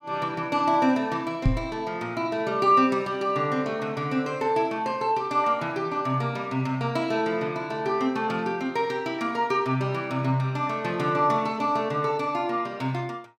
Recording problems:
microphone bump; at 1.5 s; peak +7 dB vs average level

